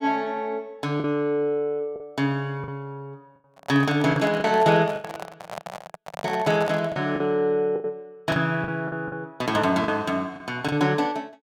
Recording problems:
lost packets; 8% of the sound replaced, filled with the last packet
handling noise; from 3.5 to 7 s; peak -5 dB vs average level

